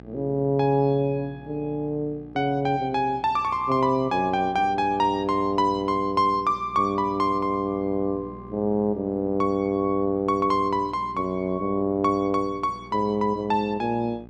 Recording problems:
electrical hum; 60 Hz, harmonics up to 1.3 kHz, SNR 21 dB

